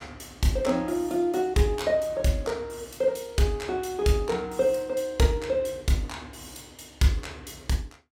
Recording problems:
none

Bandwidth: 17 kHz